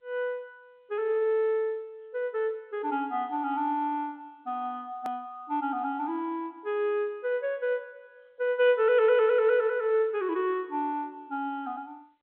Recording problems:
telephone audio; 240 Hz to 3.4 kHz, G.711
edit click; at 5 s

